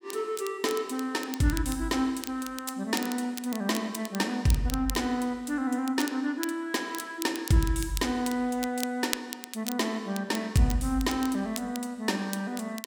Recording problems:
crackle; vinyl, SNR 11 dB

